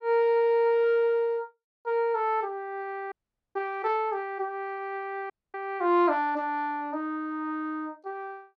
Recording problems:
audio cutting out; at 3 s and at 5.5 s

